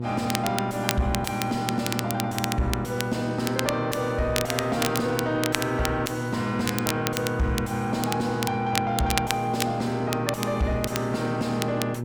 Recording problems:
distorted audio; soft clipping, signal-to-distortion ratio 11 dB
hum; 60 Hz, harmonics up to 840 Hz, SNR 4 dB
crackling; vinyl, SNR 6 dB

